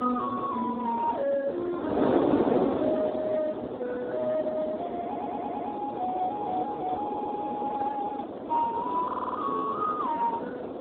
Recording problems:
phone line; 190 Hz to 2.1 kHz, Speex
wind noise; below 650 Hz, SNR 1 dB
stutter; at 5 s, at 7 s and at 9 s

